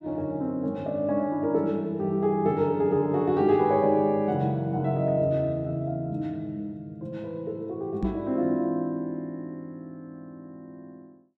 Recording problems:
microphone bump; at 8 s; peak +2 dB vs average level

